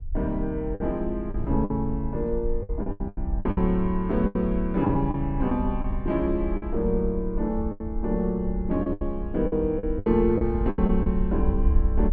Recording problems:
low-frequency rumble; below 64 Hz, SNR 6 dB
wind noise; below 110 Hz, SNR 15 dB
packet loss; 10% of the sound replaced, filled with the last packet

